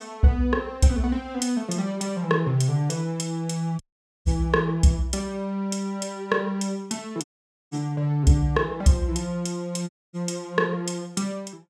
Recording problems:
audio cutting out; at 4 s, at 7 s and at 10 s

